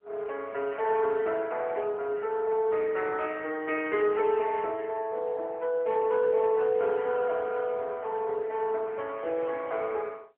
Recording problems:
phone line; 340 Hz to 3.2 kHz, AMR-NB

